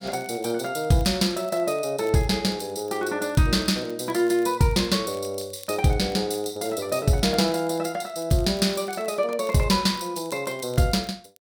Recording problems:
crackle; vinyl, SNR 26 dB

